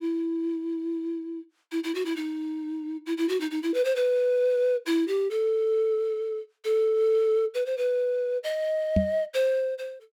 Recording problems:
knock on the microphone; at 9 s; peak +6 dB vs average level

